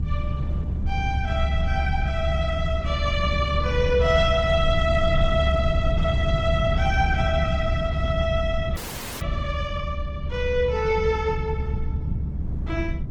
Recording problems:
lossy compression; Opus, log-spectral distance 2 dB
hum; 50 Hz, harmonics up to 700 Hz, SNR 19 dB
rumble; below 120 Hz, SNR 1 dB
wind noise; below 270 Hz, SNR 16 dB
audio freezing; at 9 s

